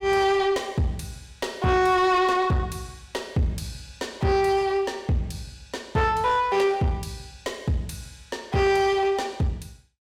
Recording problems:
distortion; soft clipping, signal-to-distortion ratio 10 dB

